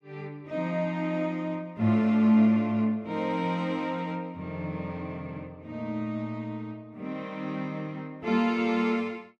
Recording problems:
none

